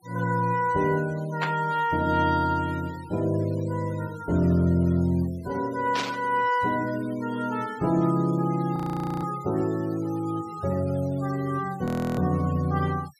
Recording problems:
noise reduction artefacts; signal-to-artefact ratio 22 dB
static burst; at 1.5 s and at 6 s; peak -1 dB vs average level
frozen audio; at 9 s and at 12 s

